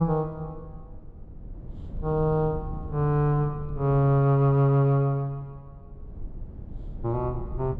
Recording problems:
rumble; below 120 Hz, SNR 16 dB

